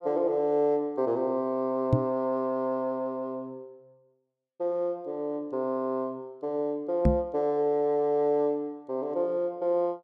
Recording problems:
microphone bump; at 2 s and at 7 s; peak +8 dB vs average level

